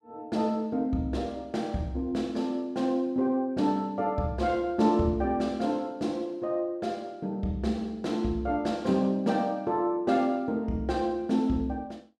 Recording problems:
none

